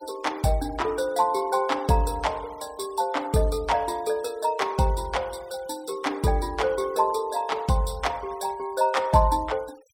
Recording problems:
noise reduction artefacts; signal-to-artefact ratio 23 dB

